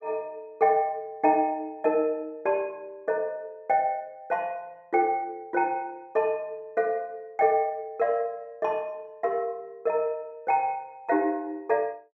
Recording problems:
none

